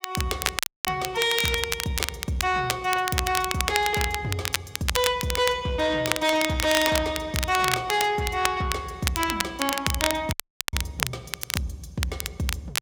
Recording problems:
distorted audio; soft clipping, signal-to-distortion ratio 10 dB
crackling; vinyl, SNR 3 dB
audio cutting out; at 0.5 s and at 10 s

